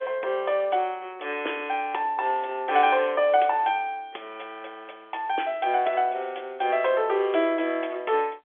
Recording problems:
telephone audio; 300 Hz to 3.5 kHz, G.711

